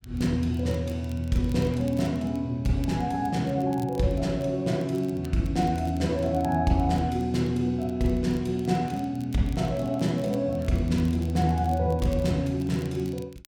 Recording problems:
crackling; vinyl, SNR 27 dB

